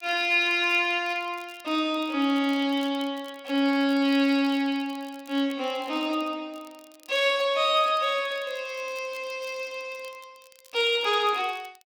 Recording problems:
crackle; vinyl, SNR 28 dB

